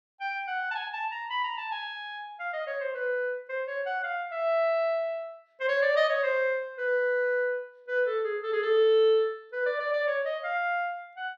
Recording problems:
none

